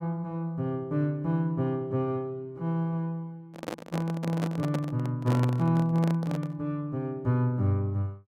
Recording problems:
handling noise; from 3.5 to 6.5 s; peak -1 dB vs average level

